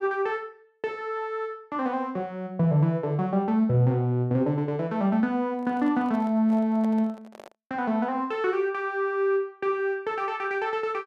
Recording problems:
handling noise; from 5.5 to 7.5 s; peak -11 dB vs average level

